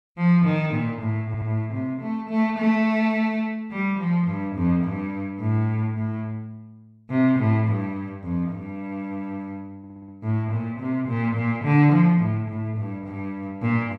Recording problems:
audio stuttering; at 1.5 s and at 10 s

